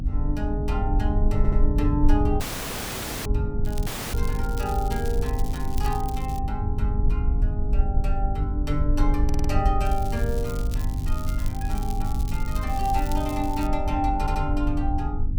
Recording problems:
hum; 50 Hz, harmonics up to 300 Hz, SNR 5 dB
rumble; below 64 Hz, SNR -2 dB
audio stuttering; at 1.5 s, at 9.5 s and at 14 s
dropout; at 2.5 s for 1 s and at 4 s
crackling; from 3.5 to 6.5 s and from 10 to 14 s; loose cable, SNR 13 dB

